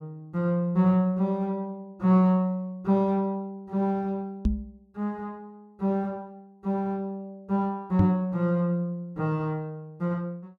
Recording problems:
knock on the microphone; at 4.5 s and at 8 s; peak +7 dB vs average level

